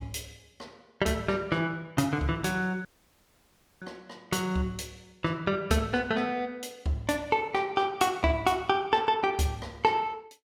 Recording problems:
dropout; at 3 s for 1 s

